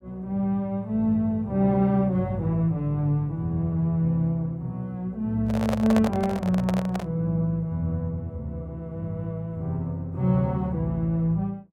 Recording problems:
microphone handling noise; from 5.5 to 7 s; peak +2 dB vs average level

